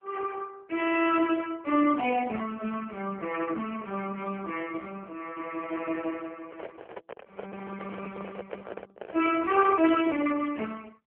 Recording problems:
phone line; 240 Hz to 3.2 kHz, AMR-NB
handling noise; from 6.5 to 9.5 s; peak -5 dB vs average level

